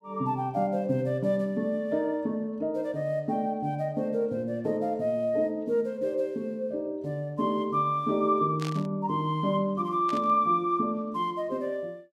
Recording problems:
burst of static; at 8.5 s and at 10 s; peak -7 dB vs average level

